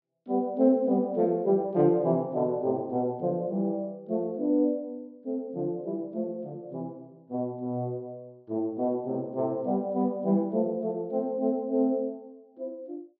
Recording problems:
low-pass filter; nothing above 5.9 kHz

